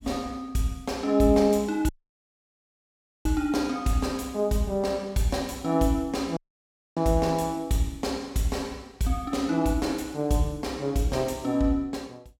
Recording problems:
dropout; at 2 s for 1.5 s and at 6.5 s for 0.5 s

